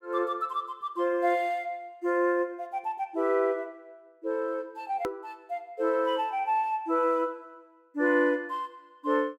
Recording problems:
edit click; at 5 s

